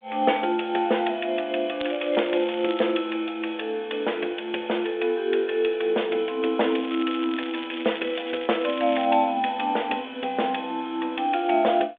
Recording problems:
phone line; 300 Hz to 3.6 kHz, G.726
crackling; from 2 to 3 s and from 6.5 to 9 s; loose cable, SNR 13 dB

